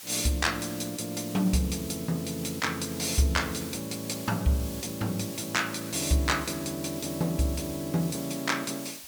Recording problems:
background hiss; slope +1 dB per octave, SNR 11 dB

